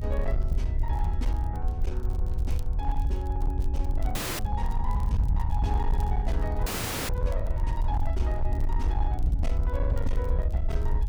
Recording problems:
distorted audio; hard clipping, signal-to-distortion ratio 11 dB
rumble; below 68 Hz, SNR -7 dB
crackle; vinyl, SNR 22 dB
audio freezing; at 4 s and at 6.5 s

